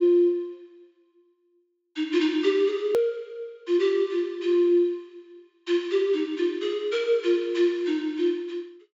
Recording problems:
treble missing; nothing above 8 kHz
edit click; at 3 s

